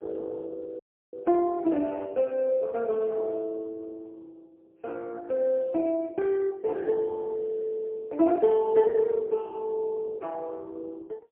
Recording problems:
telephone audio; 260 Hz to 2.6 kHz, AMR-NB, then MP3
dropout; at 1 s

